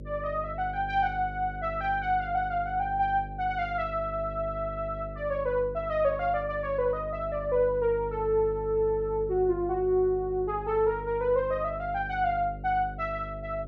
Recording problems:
electrical hum; 50 Hz, harmonics up to 600 Hz, SNR 13 dB

